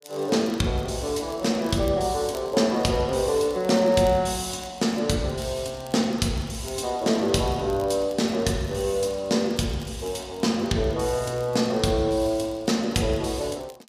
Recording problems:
crackling; vinyl, SNR 26 dB

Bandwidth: 15 kHz